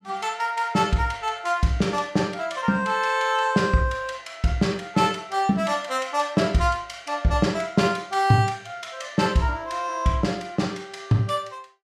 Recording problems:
none

